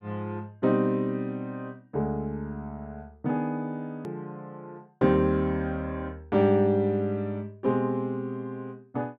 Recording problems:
edit click; at 4 s

